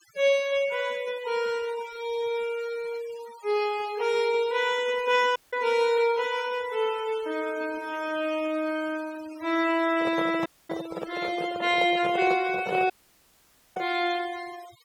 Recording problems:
denoising artefacts; signal-to-artefact ratio 18 dB
dropout; at 5.5 s, at 10 s and at 13 s for 1 s
microphone handling noise; from 10 to 14 s; peak -2 dB vs average level

